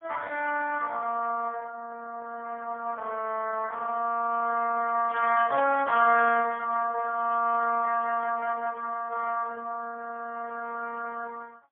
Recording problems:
phone line; 260 Hz to 2.6 kHz, AMR-NB, then MP3
burst of static; at 5 s; peak -13 dB vs average level

